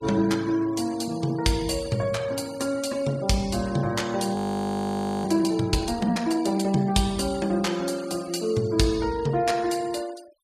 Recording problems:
denoising artefacts; signal-to-artefact ratio 21 dB
audio freezing; at 4.5 s for 1 s

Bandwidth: 14.5 kHz